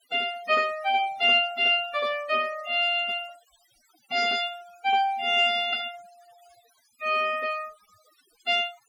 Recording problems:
noise reduction artefacts; signal-to-artefact ratio 23 dB

